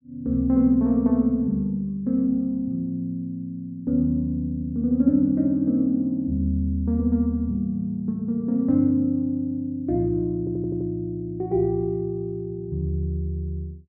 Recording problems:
audio stuttering; at 10 s

